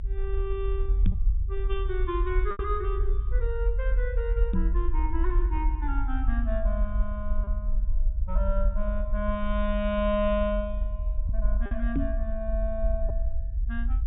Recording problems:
treble cut off; nothing above 4 kHz
low-frequency rumble; below 50 Hz, SNR -3 dB
lost packets; 1.3% of the sound replaced, filled with repeated pitch periods
microphone thump; at 1 s, at 4.5 s and at 12 s; peak +9 dB vs average level

